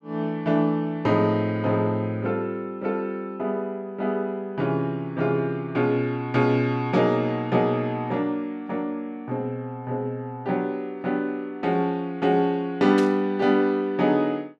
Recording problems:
burst of static; at 13 s; peak -6 dB vs average level

